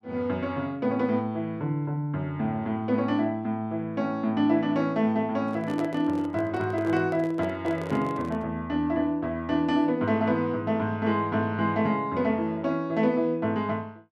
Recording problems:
handling noise; from 5.5 to 8.5 s; peak -5 dB vs average level

